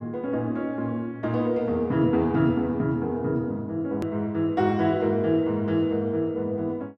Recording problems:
edit click; at 4 s

